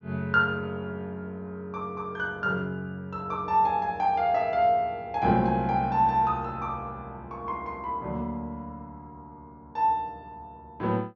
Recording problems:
low-pass filter; nothing above 7 kHz

